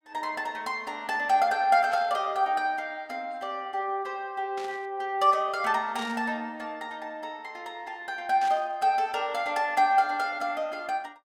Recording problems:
burst of static; 4 times, first at 2 s; peak -10 dB vs average level

